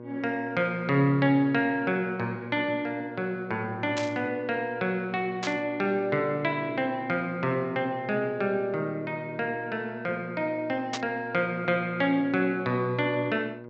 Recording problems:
treble cut off; nothing above 8 kHz
hum; 60 Hz, harmonics up to 1.6 kHz, SNR 14 dB
burst of static; at 4 s, at 5.5 s and at 11 s; peak -1 dB vs average level

